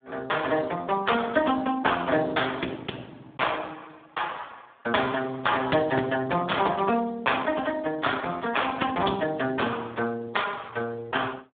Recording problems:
phone line; 170 Hz to 3.7 kHz, Speex

